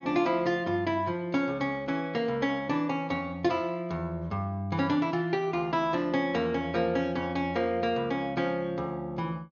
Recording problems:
treble cut off; nothing above 6.7 kHz

